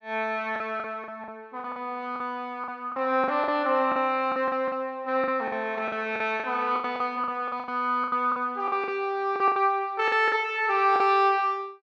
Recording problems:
packet loss; 13% of the sound replaced, filled with the last packet

